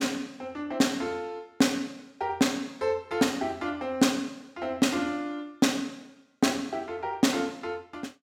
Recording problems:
none

